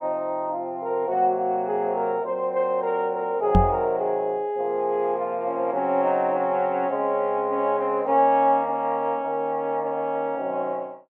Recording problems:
microphone thump; at 3.5 s; peak +7 dB vs average level

